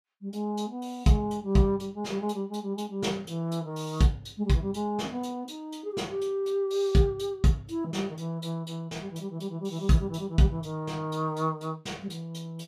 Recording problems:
none

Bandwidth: 15 kHz